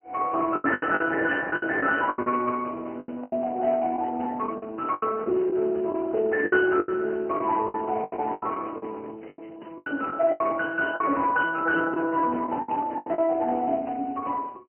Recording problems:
phone line; 220 Hz to 3 kHz, Speex
lost packets; 12% of the sound replaced, filled with the last packet

